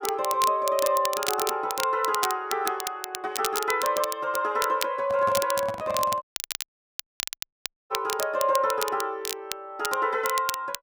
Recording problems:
crackling; vinyl, SNR 7 dB
microphone handling noise; from 5 to 6 s; peak -5 dB vs average level
audio cutting out; at 6 s for 1.5 s

